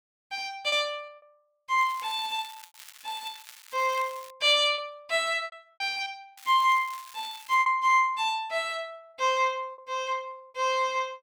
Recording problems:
lost packets; 5% of the sound replaced, filled with repeated pitch periods
crackle; from 2 to 4.5 s and from 6.5 to 7.5 s; loose cable, SNR 20 dB

